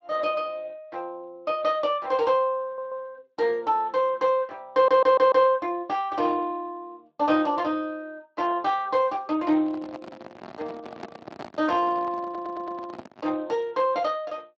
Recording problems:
codec artefacts; Speex, log-spectral distance 3 dB
stutter; at 2.5 s, at 4.5 s and at 12 s
microphone handling noise; from 9.5 to 13 s; peak -8 dB vs average level

